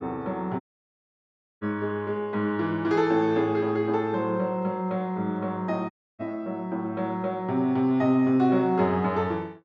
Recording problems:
audio cutting out; at 0.5 s for 1 s and at 6 s

